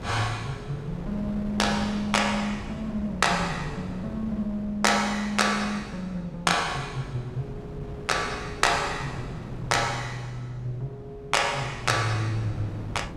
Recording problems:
electrical hum; 50 Hz, harmonics up to 600 Hz, SNR 20 dB
wind noise; below 330 Hz, SNR 13 dB

